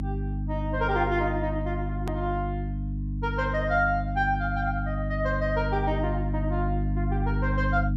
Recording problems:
hum; 50 Hz, harmonics up to 300 Hz, SNR 1 dB
hard cut with a click; at 2 s

